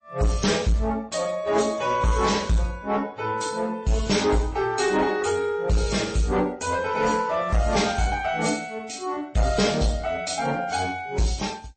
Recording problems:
codec artefacts; AAC, then MP3, log-spectral distance 4 dB, nothing above 8.2 kHz
distortion; soft clipping, signal-to-distortion ratio 11 dB

